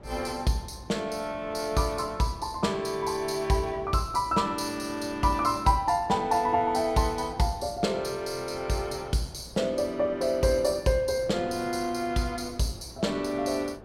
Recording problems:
wind noise; below 610 Hz, SNR 20 dB

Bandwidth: 16.5 kHz